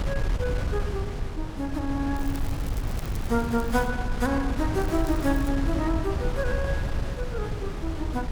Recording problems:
wind on the microphone; below 120 Hz, SNR 1 dB
crackle; from 2 to 4 s and at 5 s; loose cable, SNR 17 dB

